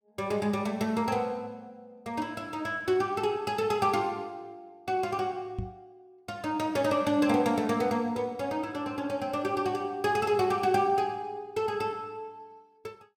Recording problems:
microphone thump; at 5.5 s; peak -2 dB vs average level

